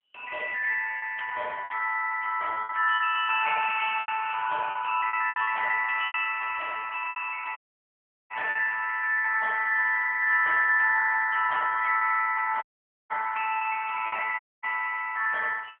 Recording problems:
phone line; 620 Hz to 2.2 kHz, AMR-NB
packet loss; 7% of the sound replaced, filled with repeated pitch periods
dropout; at 7.5 s for 0.5 s, at 13 s and at 14 s

